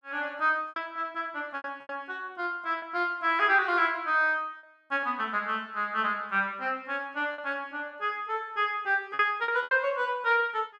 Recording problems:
lost packets; 6% of the sound replaced, filled with repeated pitch periods

